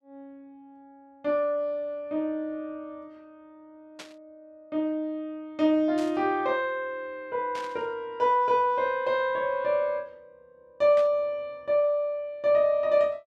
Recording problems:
static burst; 4 times, first at 4 s; peak -11 dB vs average level

